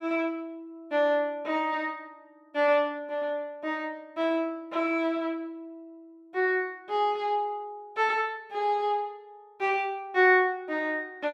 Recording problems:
none

